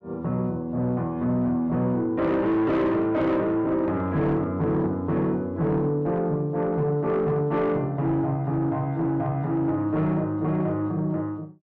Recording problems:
distorted audio; soft clipping, signal-to-distortion ratio 11 dB

